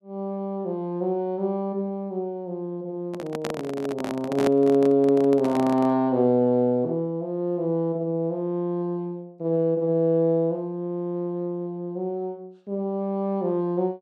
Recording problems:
handling noise; from 3 to 6 s; peak +1 dB vs average level

